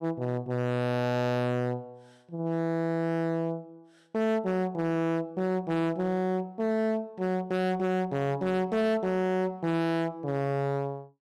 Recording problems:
distortion; hard clipping, signal-to-distortion ratio 7 dB

